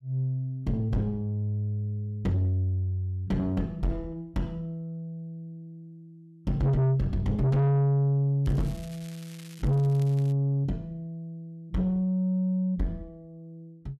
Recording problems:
distorted audio; soft clipping, signal-to-distortion ratio 7 dB
crackling; from 8.5 to 10 s; loose cable, SNR 22 dB

